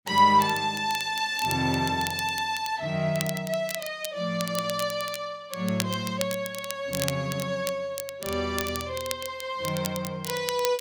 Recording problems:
crackling; vinyl, SNR 9 dB

